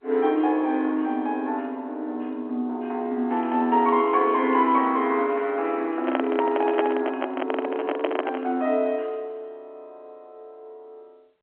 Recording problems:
telephone audio; 190 Hz to 3.4 kHz, G.711
crackling; from 3.5 to 5 s; loose cable, SNR 27 dB
handling noise; from 6 to 8.5 s; peak +4 dB vs average level

